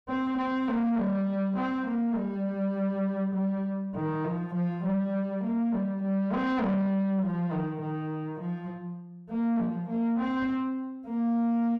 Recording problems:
distortion; soft clipping, signal-to-distortion ratio 11 dB

